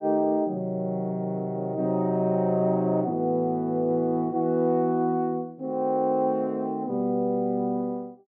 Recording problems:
none

